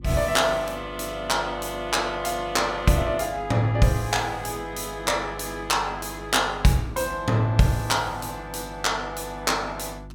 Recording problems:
electrical hum; 50 Hz, harmonics up to 350 Hz, SNR 18 dB

